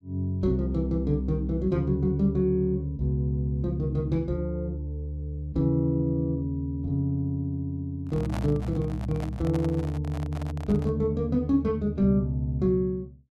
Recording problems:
microphone handling noise; from 8 to 11 s; peak -5 dB vs average level

